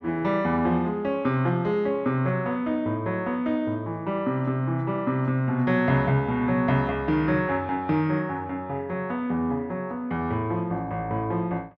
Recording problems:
none

